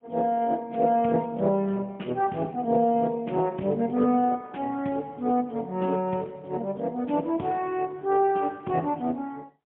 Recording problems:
phone line; 130 Hz to 3.4 kHz, AMR-NB, then MP3

